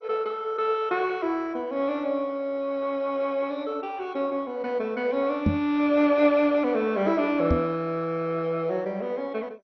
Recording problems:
lossy codec; MP2, log-spectral distance 3 dB, nothing above 5.8 kHz
microphone bump; at 5.5 s and at 7.5 s; peak +6 dB vs average level

